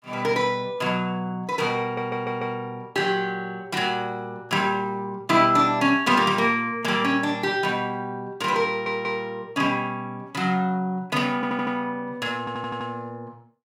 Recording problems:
audio stuttering; 4 times, first at 2 s

